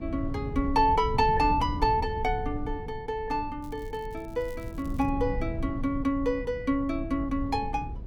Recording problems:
rumble; below 120 Hz, SNR 8 dB
crackle; from 3.5 to 5 s; loose cable, SNR 28 dB

